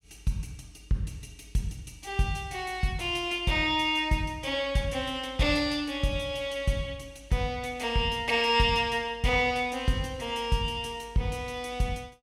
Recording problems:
none

